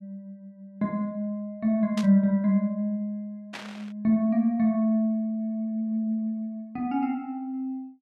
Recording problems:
static burst; at 2 s and at 3.5 s; peak -6 dB vs average level

